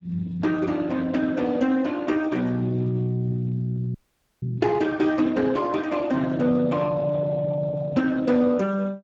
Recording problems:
lossy codec; Speex, log-spectral distance 3 dB
audio freezing; at 4 s

